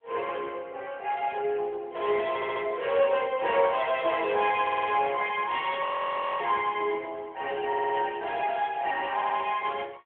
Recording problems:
telephone audio; 300 Hz to 3.3 kHz, AMR-NB
stutter; 4 times, first at 2.5 s
frozen audio; at 6 s for 0.5 s

